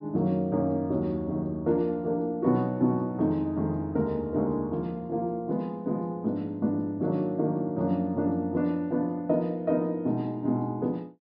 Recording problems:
treble missing; nothing above 5.5 kHz

